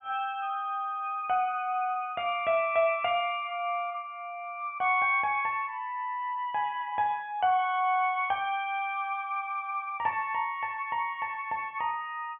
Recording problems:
treble missing; nothing above 3.3 kHz

